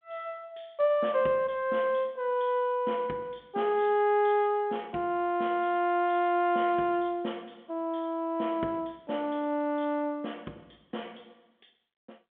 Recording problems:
phone line; 220 Hz to 3.4 kHz, G.726

